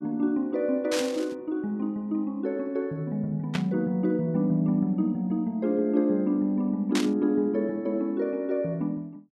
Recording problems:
static burst; at 1 s, at 3.5 s and at 7 s; peak 0 dB vs average level

